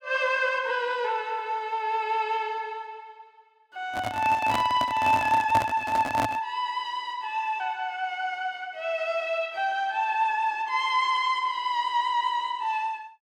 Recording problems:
microphone handling noise; from 4 to 6.5 s; peak +2 dB vs average level

